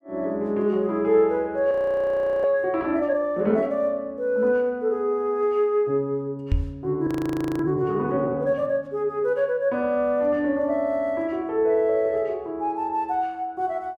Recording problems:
audio freezing; at 1.5 s for 0.5 s and at 7 s for 0.5 s
microphone bump; at 6.5 s; peak +4 dB vs average level

